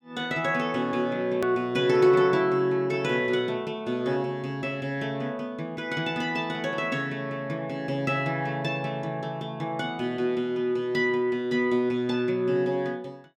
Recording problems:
click at an edit; at 1.5 s

